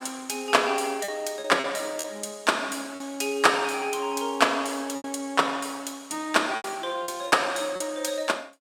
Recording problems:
lost packets; 6% of the sound replaced, filled with repeated pitch periods

